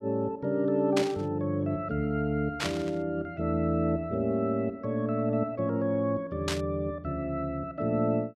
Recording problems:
static burst; at 1 s, at 2.5 s and at 6.5 s; peak +2 dB vs average level

